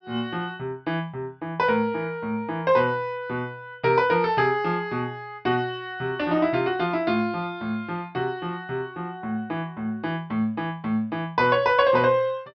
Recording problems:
treble missing; nothing above 5.5 kHz

